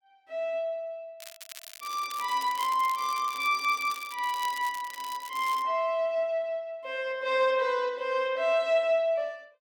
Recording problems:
crackling; from 1 to 5.5 s; loose cable, SNR 15 dB

